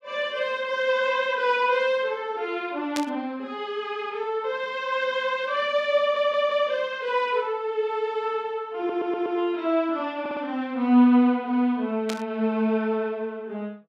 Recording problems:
burst of static; at 3 s and at 12 s; peak -2 dB vs average level
stutter; at 6 s, at 9 s and at 10 s

